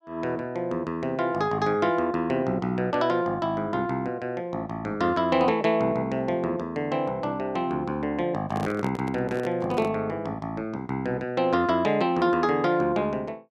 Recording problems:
handling noise; from 8.5 to 10 s; peak -4 dB vs average level

